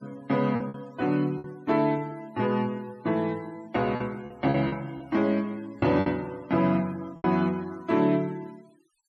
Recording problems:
noise reduction artefacts; signal-to-artefact ratio 26 dB
lost packets; 6% of the sound replaced, filled with repeated pitch periods

